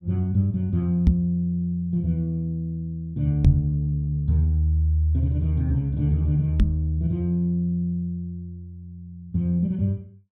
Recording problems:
microphone thump; at 1 s, at 3.5 s and at 6.5 s; peak +10 dB vs average level

